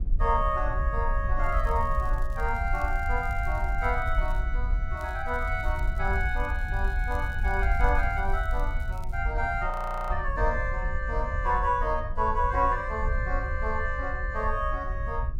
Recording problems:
wind on the microphone; below 62 Hz, SNR 2 dB
crackle; from 1.5 to 4.5 s and from 5 to 9 s; loose cable, SNR 28 dB
frozen audio; at 9.5 s

